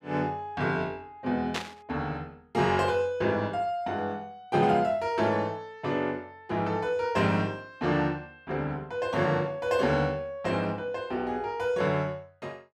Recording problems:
static burst; at 1.5 s; peak +1 dB vs average level

